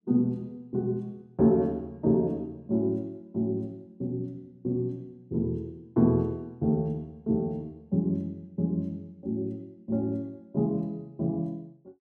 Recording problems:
none

